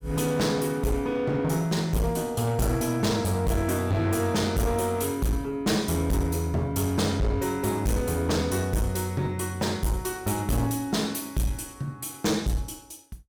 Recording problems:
distorted audio; hard clipping, uneven, signal-to-distortion ratio 7 dB

